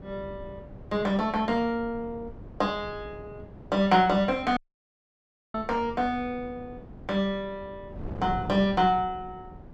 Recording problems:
wind on the microphone; below 310 Hz, SNR 16 dB
dropout; at 4.5 s for 1 s

